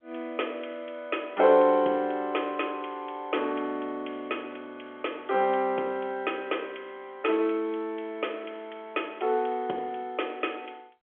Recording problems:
phone line; 280 Hz to 3.4 kHz, G.711

